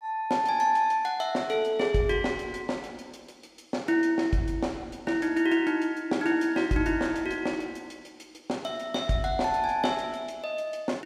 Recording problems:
none

